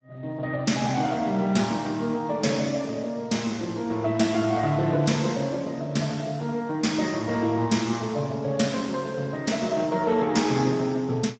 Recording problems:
codec artefacts; Speex, log-spectral distance 4 dB, nothing above 7.3 kHz

